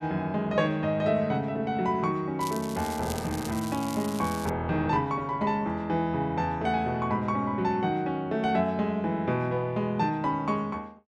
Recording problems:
crackle; from 2.5 to 4.5 s; loose cable, SNR 14 dB

